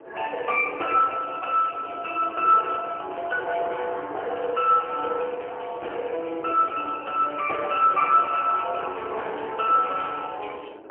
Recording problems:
telephone audio; 340 Hz to 3.3 kHz, AMR-NB, then MP3
wind on the microphone; below 650 Hz, SNR 19 dB

